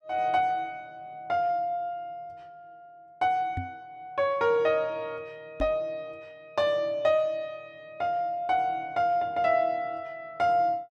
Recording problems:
microphone thump; at 3.5 s and at 5.5 s; peak -2 dB vs average level

